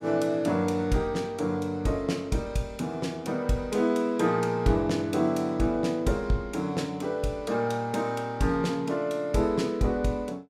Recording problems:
none

